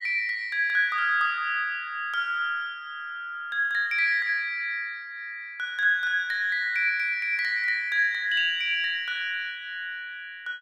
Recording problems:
none

